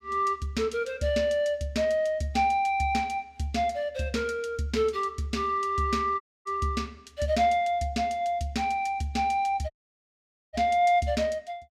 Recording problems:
dropout; at 6 s and at 9.5 s for 1 s

